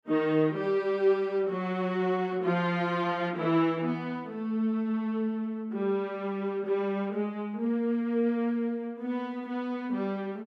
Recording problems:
none

